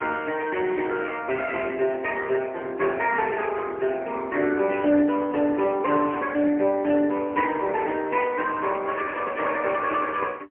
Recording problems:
telephone audio; 220 Hz to 3 kHz, AMR-NB, then MP3

